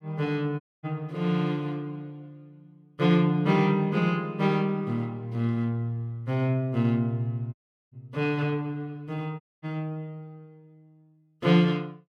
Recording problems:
audio cutting out; at 0.5 s, at 7.5 s and at 9.5 s

